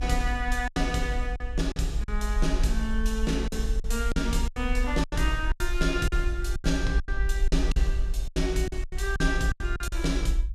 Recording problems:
low-frequency rumble; below 52 Hz, SNR 1 dB
lost packets; 12% of the sound replaced, filled with silence

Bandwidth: 14.5 kHz